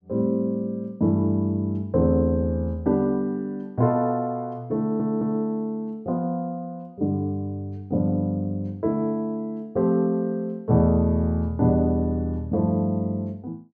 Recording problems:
audio stuttering; at 5 s

